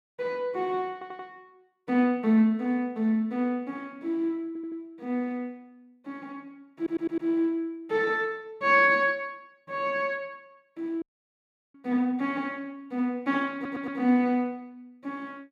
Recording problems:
audio stuttering; 4 times, first at 1 s
dropout; at 11 s for 0.5 s

